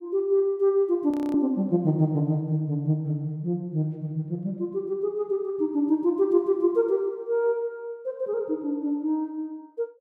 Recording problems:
frozen audio; at 1 s

